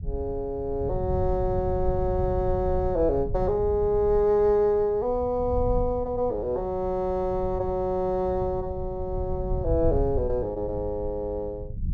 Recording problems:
rumble; below 100 Hz, SNR 8 dB

